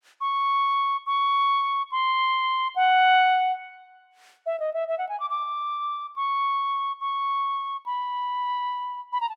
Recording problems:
none

